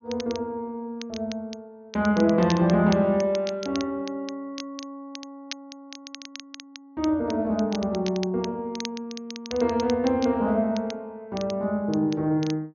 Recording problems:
low-pass filter; nothing above 6.5 kHz
crackle; vinyl, SNR 16 dB

